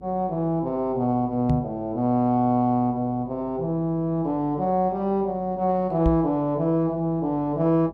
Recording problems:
hum; 50 Hz, harmonics up to 500 Hz, SNR 24 dB
knock on the microphone; at 1.5 s and at 6 s; peak +3 dB vs average level

